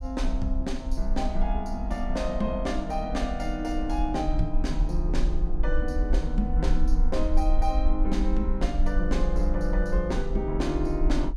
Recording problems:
rumble; below 46 Hz, SNR 0 dB

